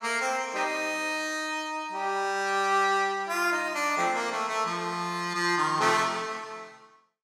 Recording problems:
none

